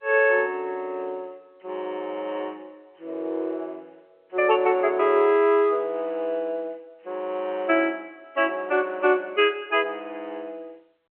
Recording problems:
phone line; 300 Hz to 3.2 kHz, G.711

